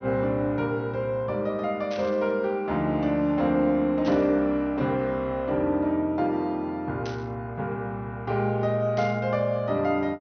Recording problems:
treble cut off; nothing above 6.3 kHz
static burst; 4 times, first at 2 s; peak -9 dB vs average level

